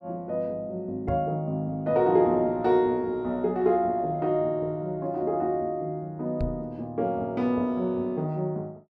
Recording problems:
knock on the microphone; at 1 s and at 6.5 s; peak -1 dB vs average level

